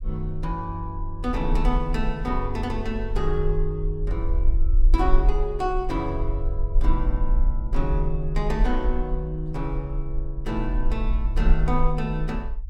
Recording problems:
low-frequency rumble; below 44 Hz, SNR -1 dB

